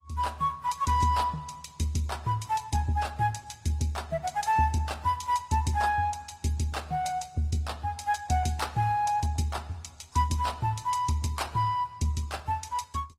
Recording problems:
lossy compression; AAC, then Opus, log-spectral distance 3 dB

